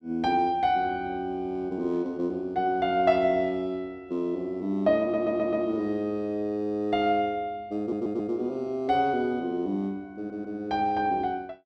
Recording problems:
audio stuttering; at 5 s, at 8 s and at 10 s

